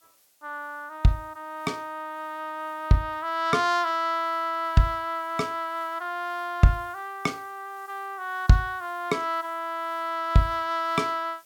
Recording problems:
background hiss; SNR 29 dB

